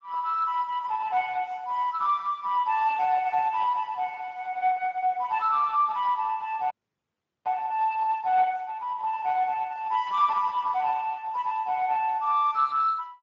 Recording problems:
lossy compression; AAC, then Speex, log-spectral distance 3 dB
frozen audio; at 6.5 s for 1 s

